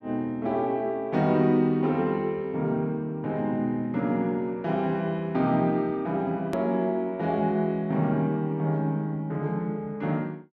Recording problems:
hard cut with a click; at 6.5 s

